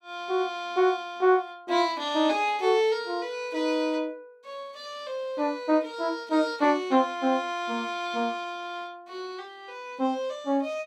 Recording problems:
none

